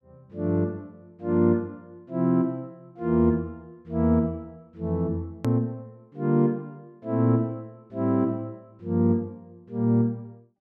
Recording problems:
hard cut with a click; at 5.5 s

